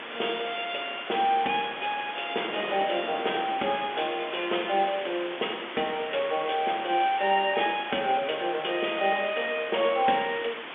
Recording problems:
phone line; 280 Hz to 3.5 kHz, G.711
background hiss; SNR 10 dB
wind noise; below 1 kHz, SNR 18 dB

